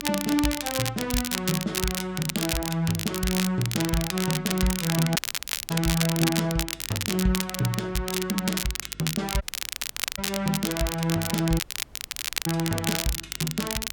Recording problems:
hum; 50 Hz, harmonics up to 400 Hz, SNR 23 dB
crackling; vinyl, SNR 2 dB
dropout; at 5 s for 0.5 s, at 9.5 s for 1 s and at 12 s for 1 s

